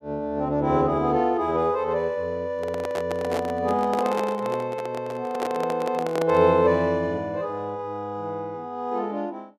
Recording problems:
microphone handling noise; from 2.5 to 6.5 s; peak -1 dB vs average level

